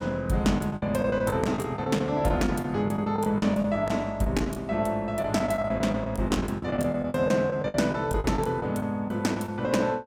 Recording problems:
lost packets; 14% of the sound replaced, filled with the last packet

